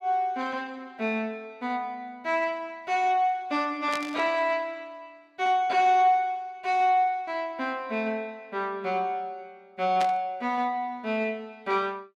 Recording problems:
burst of static; at 4 s and at 10 s; peak -3 dB vs average level

